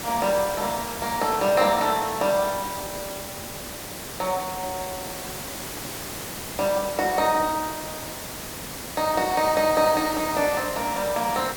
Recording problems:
background hiss; slope -3 dB per octave, SNR 8 dB

